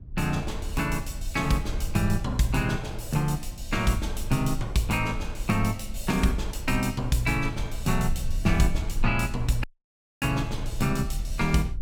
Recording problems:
low-frequency rumble; below 58 Hz, strongest tone 22 Hz, SNR 8 dB
dropout; at 9.5 s for 0.5 s

